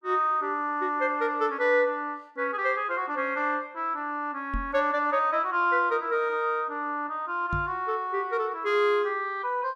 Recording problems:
microphone bump; at 4.5 s and at 7.5 s; peak -3 dB vs average level

